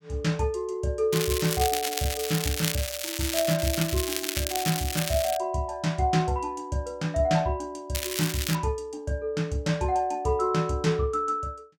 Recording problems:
crackling; from 1 to 5.5 s and at 8 s; loose cable, SNR 3 dB

